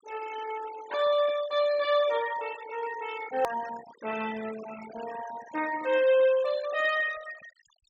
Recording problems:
treble missing; nothing above 8 kHz
denoising artefacts; signal-to-artefact ratio 15 dB
hard cut with a click; at 3.5 s

